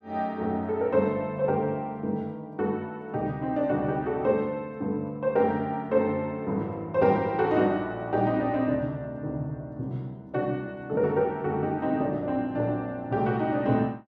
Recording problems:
none

